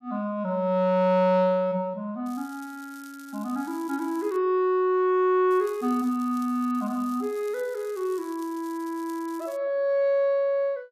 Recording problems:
crackle; from 2.5 to 4.5 s, from 5.5 to 6.5 s and from 7 to 9.5 s; loose cable, SNR 25 dB

